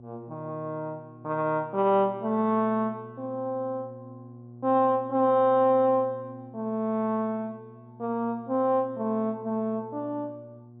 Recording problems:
low-pass filter; nothing above 4 kHz
hum; 60 Hz, harmonics up to 720 Hz, SNR 20 dB

